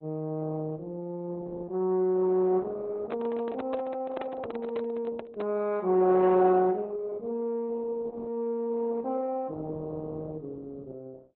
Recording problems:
lossy codec; Opus, log-spectral distance 2 dB
handling noise; from 3 to 5.5 s; peak -1 dB vs average level

